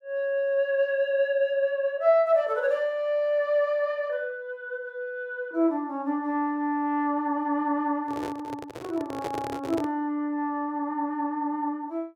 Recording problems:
microphone handling noise; from 8 to 10 s; peak -3 dB vs average level

